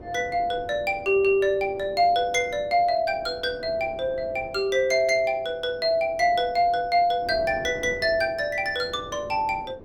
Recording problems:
wind on the microphone; below 520 Hz, SNR 19 dB

